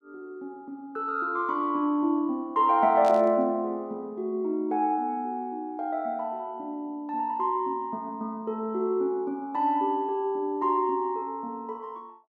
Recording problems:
static burst; at 3 s; peak -10 dB vs average level

